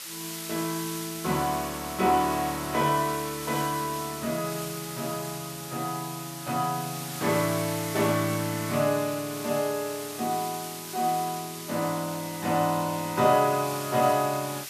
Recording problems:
background hiss; slope +3 dB per octave, SNR 9 dB

